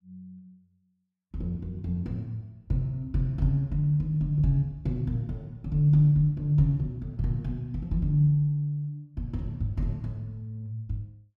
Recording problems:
none

